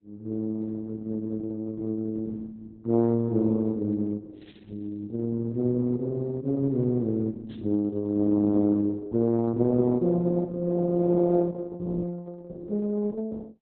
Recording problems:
lossy codec; Opus, log-spectral distance 2 dB, nothing above 4 kHz

